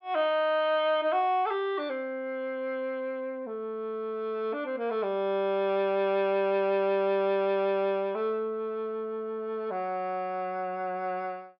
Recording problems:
treble missing; nothing above 5.3 kHz

